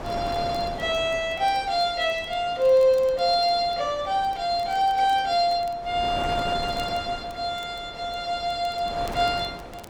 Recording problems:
wind noise; below 940 Hz, SNR 14 dB
crackling; vinyl, SNR 29 dB

